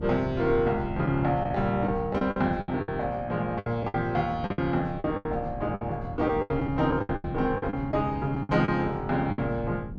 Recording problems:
electrical hum; 50 Hz, harmonics up to 700 Hz, SNR 19 dB
wind noise; below 150 Hz, SNR 13 dB
lost packets; 12% of the sound replaced, filled with the last packet

